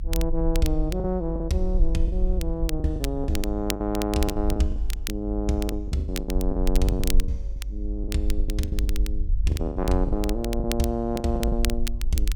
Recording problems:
rumble; below 50 Hz, SNR 1 dB
crackle; vinyl, SNR 10 dB
packet loss; 14% of the sound replaced, filled with the last packet

